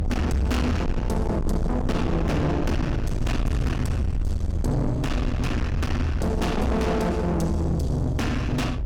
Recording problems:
distortion; soft clipping, signal-to-distortion ratio 8 dB
rumble; below 170 Hz, SNR 2 dB

